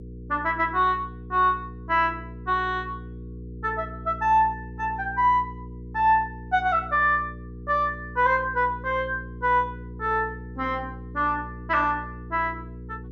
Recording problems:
hum; 60 Hz, harmonics up to 480 Hz, SNR 14 dB

